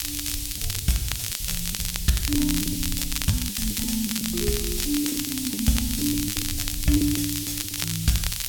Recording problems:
background hiss; SNR 2 dB
wind on the microphone; below 80 Hz, SNR 11 dB
crackling; vinyl, SNR 3 dB
lost packets; 14% of the sound replaced, filled with the last packet

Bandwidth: 17 kHz